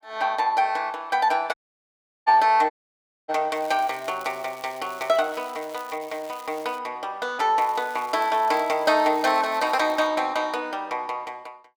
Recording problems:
dropout; at 1.5 s for 0.5 s and at 2.5 s for 0.5 s
crackle; from 3.5 to 7 s and from 7.5 to 10 s; loose cable, SNR 22 dB

